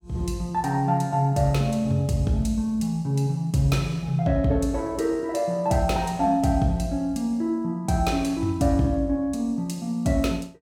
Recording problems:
none

